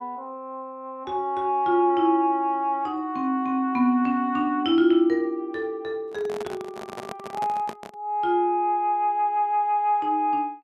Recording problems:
handling noise; from 6 to 8 s; peak -7 dB vs average level

